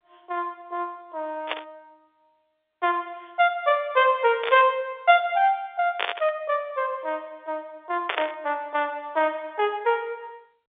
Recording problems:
phone line; 370 Hz to 3.6 kHz, G.711
static burst; 4 times, first at 1.5 s; peak +3 dB vs average level

